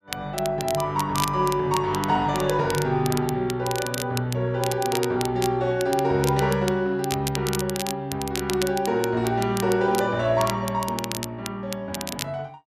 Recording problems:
crackle; vinyl, SNR 10 dB

